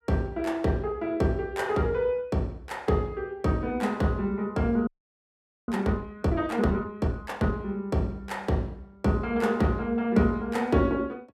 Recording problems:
audio freezing; at 5 s for 1 s

